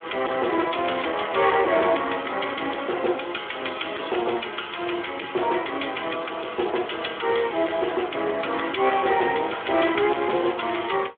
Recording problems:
phone line; 280 Hz to 3.4 kHz, Speex
distortion; hard clipping, signal-to-distortion ratio 12 dB

